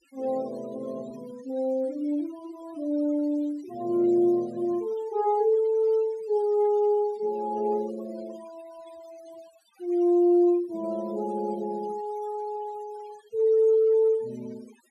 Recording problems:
noise reduction artefacts; signal-to-artefact ratio 25 dB

